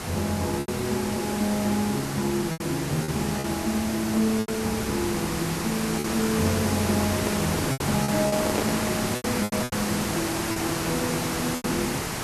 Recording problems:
hiss; slope -4 dB per octave, SNR 2 dB
packet loss; 7% of the sound replaced, filled with repeated pitch periods
handling noise; from 7 to 9 s; peak +4 dB vs average level

